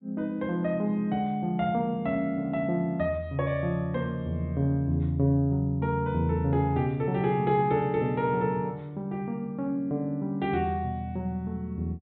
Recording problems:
treble cut off; nothing above 4 kHz

